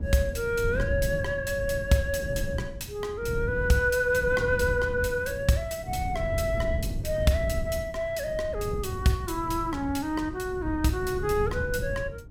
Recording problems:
wind on the microphone; below 140 Hz, SNR 7 dB

